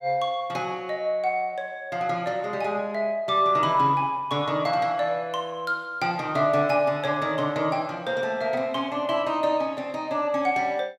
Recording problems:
none

